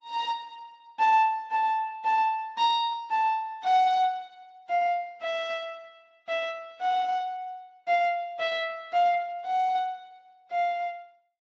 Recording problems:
lossy codec; Vorbis, then Speex, log-spectral distance 2 dB

